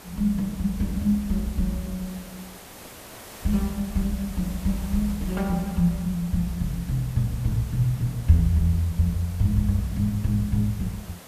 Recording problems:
background hiss; slope -4 dB per octave, SNR 17 dB

